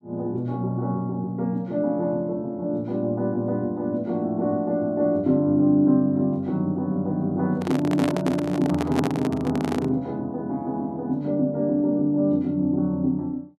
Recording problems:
handling noise; from 7.5 to 10 s; peak +2 dB vs average level

